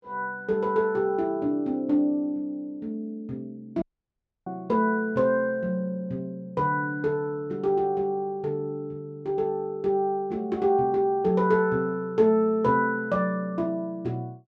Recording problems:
audio cutting out; at 4 s for 0.5 s

